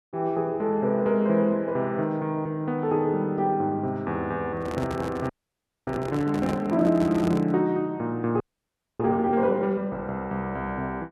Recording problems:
handling noise; from 4.5 to 7.5 s; peak -3 dB vs average level
frozen audio; at 5.5 s for 0.5 s and at 8.5 s for 0.5 s

